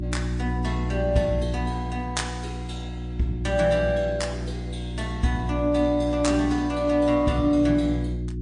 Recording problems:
codec artefacts; MP3, log-spectral distance 2 dB
hum; 60 Hz, harmonics up to 360 Hz, SNR 6 dB

